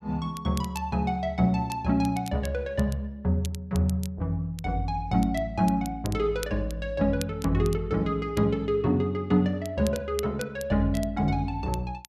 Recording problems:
crackling; vinyl, SNR 18 dB

